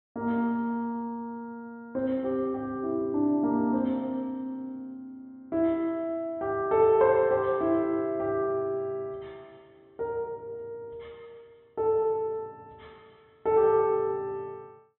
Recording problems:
treble missing; nothing above 4 kHz

